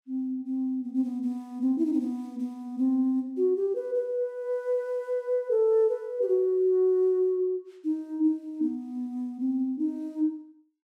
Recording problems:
none

